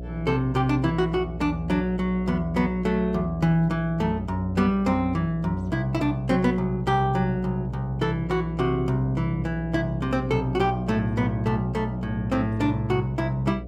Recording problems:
hum; 60 Hz, harmonics up to 720 Hz, SNR 12 dB

